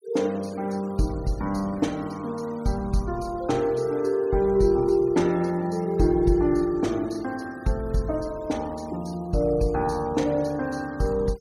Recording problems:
noise reduction artefacts; signal-to-artefact ratio 24 dB

